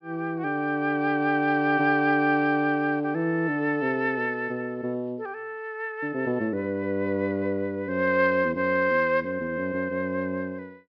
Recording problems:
treble missing; nothing above 5.5 kHz

